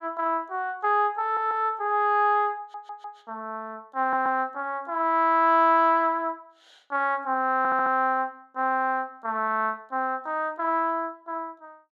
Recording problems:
stutter; 4 times, first at 1 s

